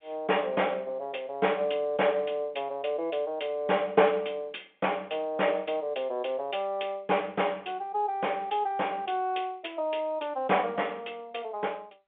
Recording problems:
phone line; 240 Hz to 3.6 kHz, G.711

